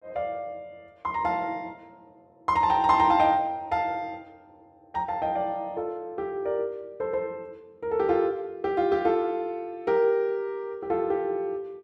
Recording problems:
none

